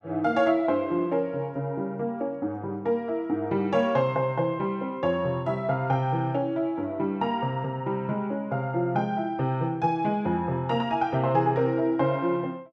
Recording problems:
none

